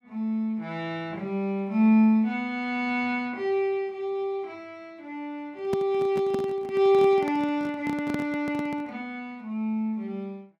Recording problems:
microphone handling noise; from 5.5 to 9 s; peak -2 dB vs average level

